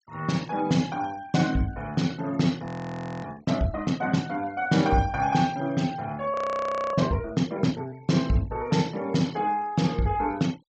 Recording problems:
treble missing; nothing above 8 kHz
denoising artefacts; signal-to-artefact ratio 23 dB
audio freezing; at 2.5 s for 0.5 s and at 6.5 s for 0.5 s

